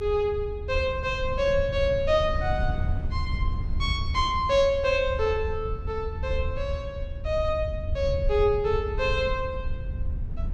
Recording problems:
low-frequency rumble; below 78 Hz, SNR 7 dB
wind noise; below 120 Hz, SNR 11 dB

